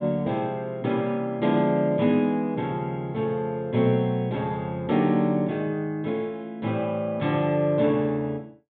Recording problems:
low-pass filter; nothing above 4 kHz

